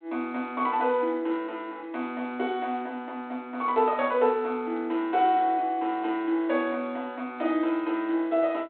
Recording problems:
phone line; 260 Hz to 3.8 kHz, G.726

